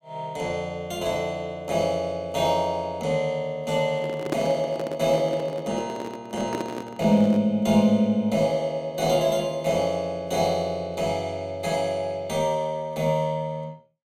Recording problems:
handling noise; from 4 to 7.5 s; peak +2 dB vs average level

